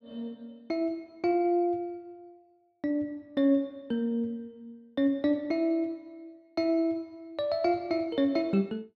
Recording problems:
none

